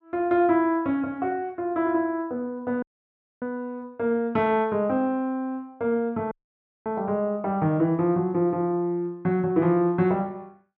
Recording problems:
dropout; at 3 s for 0.5 s and at 6.5 s for 0.5 s

